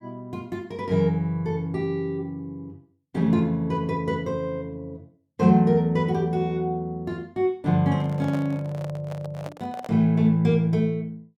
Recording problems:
handling noise; from 8 to 10 s; peak -8 dB vs average level

